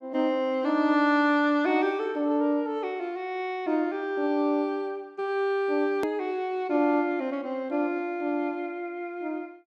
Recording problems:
hard cut with a click; at 6 s

